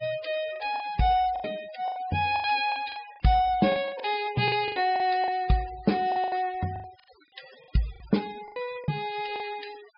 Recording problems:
treble missing; nothing above 5.5 kHz
denoising artefacts; signal-to-artefact ratio 20 dB
lost packets; 12% of the sound replaced, filled with the last packet

